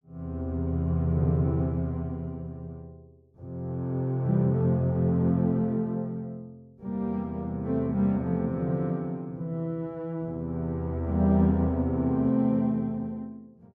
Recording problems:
none

